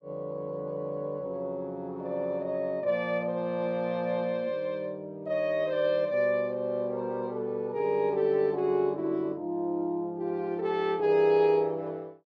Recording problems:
none

